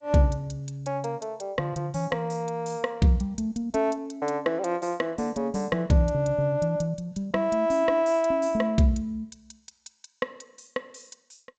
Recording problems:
codec artefacts; G.722, log-spectral distance 4 dB, nothing above 7.6 kHz

